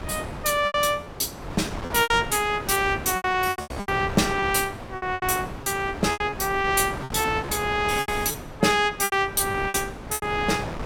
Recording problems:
wind noise; below 920 Hz, SNR 11 dB
lost packets; 13% of the sound replaced, filled with repeated pitch periods

